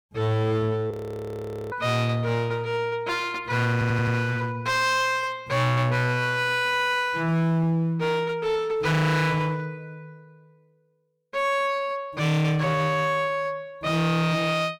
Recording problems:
distortion; hard clipping, uneven, signal-to-distortion ratio 6 dB
frozen audio; at 1 s for 1 s
stutter; at 3.5 s

